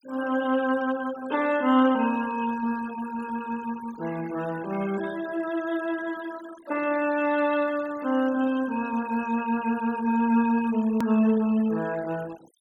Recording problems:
noise reduction artefacts; signal-to-artefact ratio 19 dB
click at an edit; at 11 s

